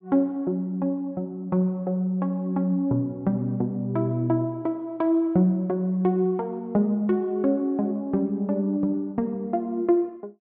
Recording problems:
none

